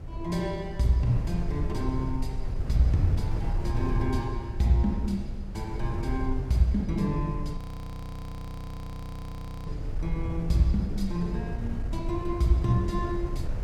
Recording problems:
wind noise; below 92 Hz, SNR 5 dB
frozen audio; at 7.5 s for 2 s

